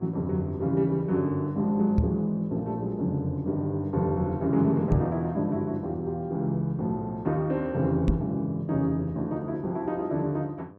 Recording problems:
hum; 50 Hz, harmonics up to 1.6 kHz, SNR 24 dB
knock on the microphone; at 2 s, at 5 s and at 8 s; peak +7 dB vs average level

